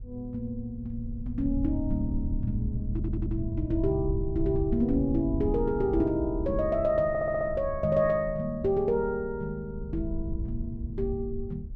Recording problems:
wind on the microphone; below 80 Hz, SNR 8 dB
audio stuttering; at 3 s and at 7 s

